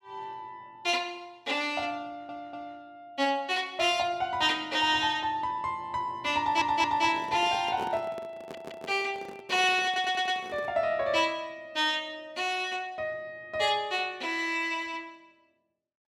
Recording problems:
stutter; 4 times, first at 2 s
handling noise; from 6.5 to 11 s; peak -6 dB vs average level

